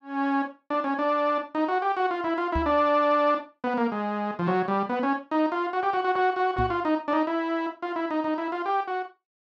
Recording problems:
microphone thump; at 2.5 s and at 6.5 s; peak -1 dB vs average level

